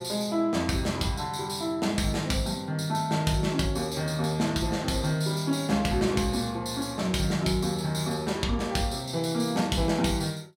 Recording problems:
none

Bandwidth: 16 kHz